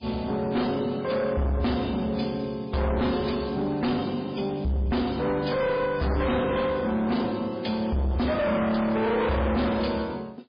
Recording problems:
codec artefacts; MP3, log-spectral distance 4 dB
distortion; soft clipping, signal-to-distortion ratio 6 dB

